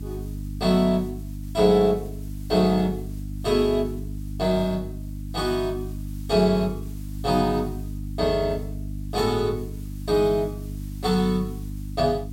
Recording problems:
mains hum; 50 Hz, harmonics up to 300 Hz, SNR 10 dB
background hiss; slope +1 dB per octave, SNR 27 dB

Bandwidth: 16 kHz